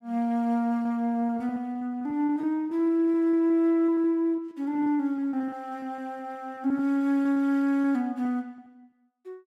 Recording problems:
lost packets; 12% of the sound replaced, filled with repeated pitch periods

